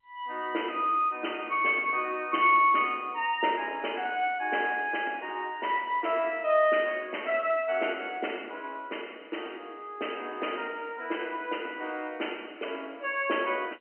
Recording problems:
telephone audio; 240 Hz to 3.1 kHz, G.711

